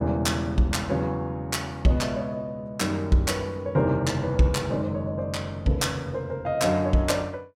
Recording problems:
none

